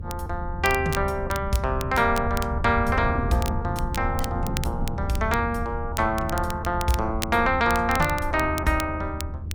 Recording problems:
low-frequency rumble; below 90 Hz, SNR 7 dB
wind on the microphone; below 310 Hz, SNR 15 dB
crackling; vinyl, SNR 13 dB

